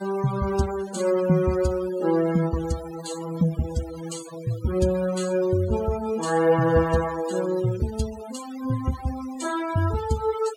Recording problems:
denoising artefacts; signal-to-artefact ratio 15 dB

